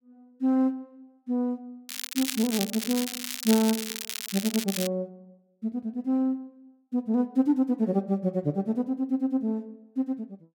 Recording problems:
crackle; from 2 to 5 s; loose cable, SNR 4 dB

